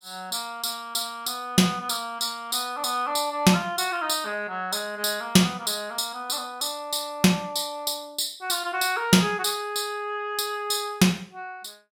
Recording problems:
none

